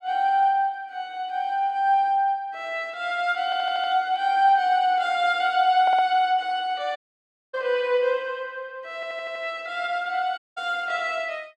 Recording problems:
stutter; at 3.5 s, at 6 s and at 9 s
audio cutting out; at 7 s for 0.5 s and at 10 s

